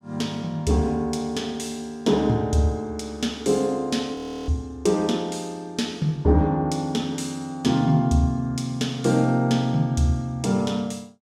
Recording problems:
audio freezing; at 4 s

